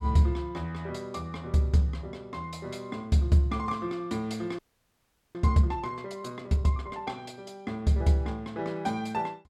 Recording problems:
audio freezing; at 4.5 s for 1 s

